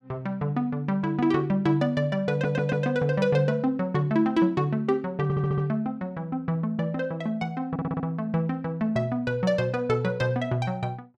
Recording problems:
stutter; at 2.5 s, at 5 s and at 7.5 s

